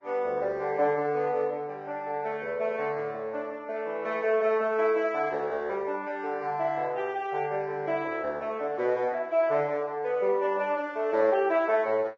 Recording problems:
lossy codec; Vorbis, log-spectral distance 2 dB

